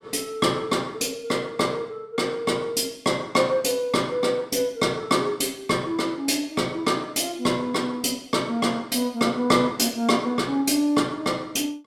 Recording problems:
none

